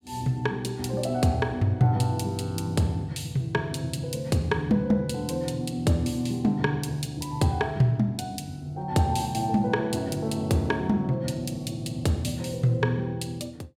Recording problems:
none

